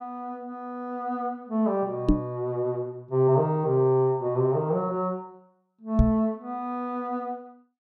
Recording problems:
microphone bump; at 2 s and at 6 s; peak +10 dB vs average level

